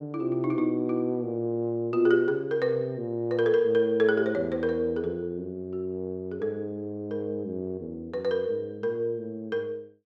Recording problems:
none

